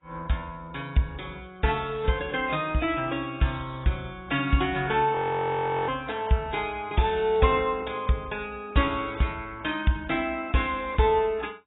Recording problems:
codec artefacts; AAC, log-spectral distance 5 dB, nothing above 3.8 kHz
audio freezing; at 5 s for 0.5 s

